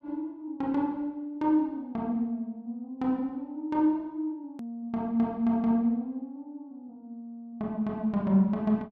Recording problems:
hard cut with a click; at 4.5 s

